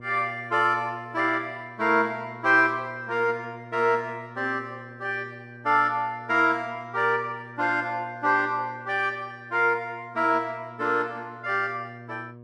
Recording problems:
electrical hum; 60 Hz, harmonics up to 1.2 kHz, SNR 20 dB

